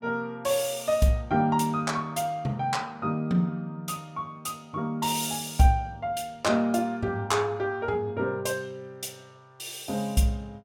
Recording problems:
none

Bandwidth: 17.5 kHz